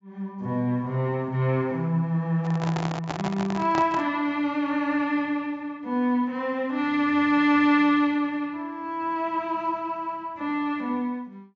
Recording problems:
treble missing; nothing above 8 kHz
handling noise; from 2.5 to 4 s; peak 0 dB vs average level

